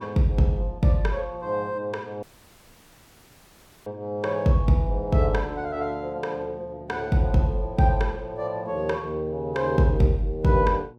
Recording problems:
electrical hum; 60 Hz, harmonics up to 1.1 kHz, SNR 27 dB
audio cutting out; at 2 s for 1.5 s

